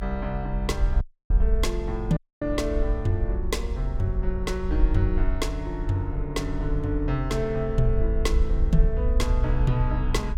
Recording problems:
low-frequency rumble; below 54 Hz, SNR 0 dB
dropout; at 1 s and at 2 s

